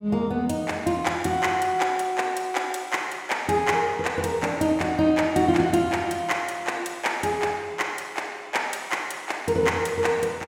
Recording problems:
none

